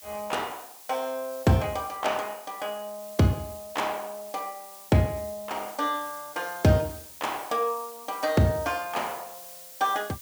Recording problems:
background hiss; slope +2 dB per octave, SNR 15 dB

